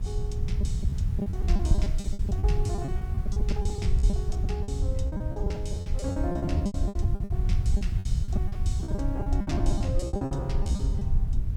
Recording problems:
electrical hum; 60 Hz, harmonics up to 660 Hz, SNR 8 dB
hiss; slope -3 dB per octave, SNR 21 dB
low-frequency rumble; below 110 Hz, SNR -5 dB
wind on the microphone; below 68 Hz, SNR -3 dB
lost packets; 21% of the sound replaced, filled with repeated pitch periods

